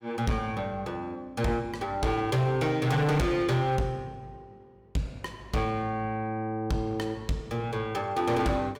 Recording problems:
distorted audio; hard clipping, signal-to-distortion ratio 11 dB

